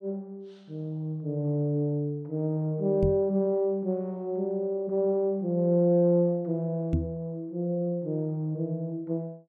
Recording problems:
knock on the microphone; at 3 s and at 7 s; peak +4 dB vs average level

